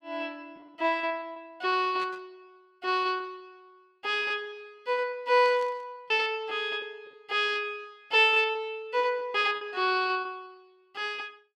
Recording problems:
lost packets; 12% of the sound replaced, filled with repeated pitch periods
static burst; at 2 s and at 5.5 s; peak -13 dB vs average level

